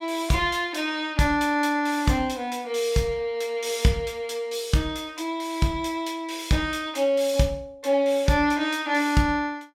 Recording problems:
none

